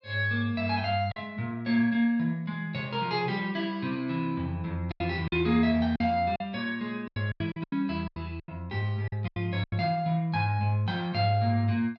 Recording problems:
lost packets; 7% of the sound replaced, filled with silence

